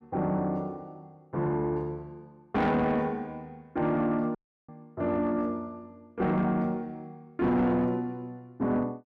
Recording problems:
distorted audio; soft clipping, signal-to-distortion ratio 10 dB
dropout; at 4.5 s

